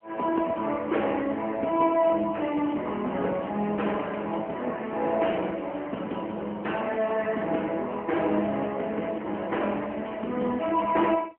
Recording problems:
telephone audio; 240 Hz to 3.8 kHz, AMR-NB

